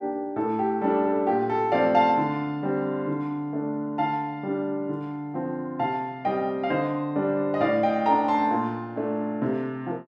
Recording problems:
none

